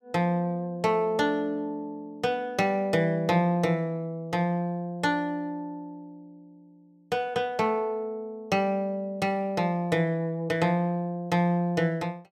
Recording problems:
none

